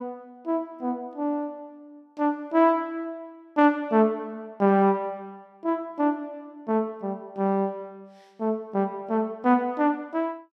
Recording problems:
none

